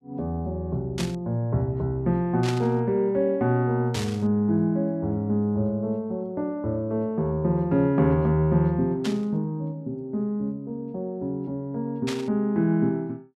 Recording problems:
burst of static; 5 times, first at 1 s; peak -3 dB vs average level

